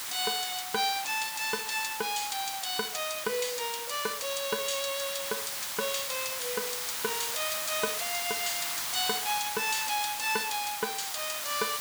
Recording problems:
background hiss; SNR 1 dB

